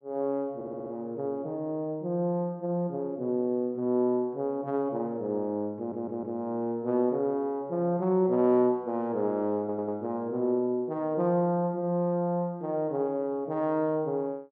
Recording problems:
stutter; at 0.5 s, at 6 s and at 9.5 s

